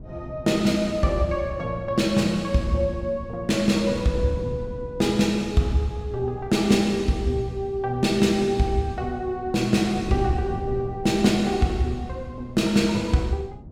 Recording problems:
wind on the microphone; below 210 Hz, SNR 15 dB

